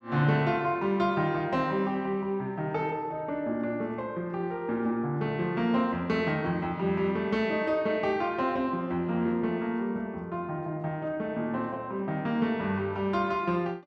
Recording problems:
none

